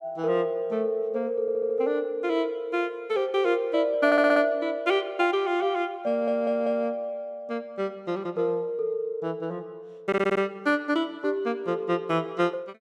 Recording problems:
stutter; 4 times, first at 1.5 s

